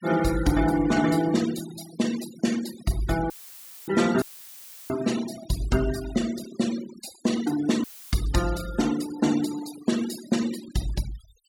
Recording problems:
noise reduction artefacts; signal-to-artefact ratio 13 dB
audio cutting out; at 3.5 s for 0.5 s, at 4 s for 0.5 s and at 8 s; filled with static

